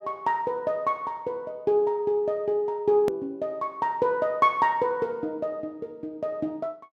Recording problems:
click at an edit; at 3 s

